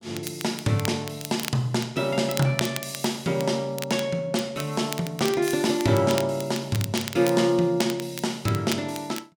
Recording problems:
crackle; vinyl, SNR 12 dB

